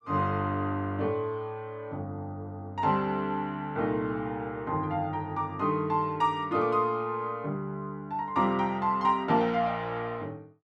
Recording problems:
none

